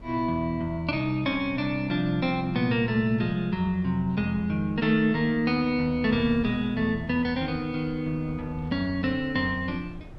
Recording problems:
wind noise; below 210 Hz, SNR 20 dB

